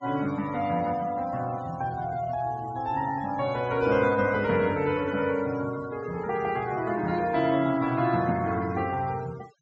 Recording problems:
treble cut off; nothing above 8 kHz
denoising artefacts; signal-to-artefact ratio 20 dB

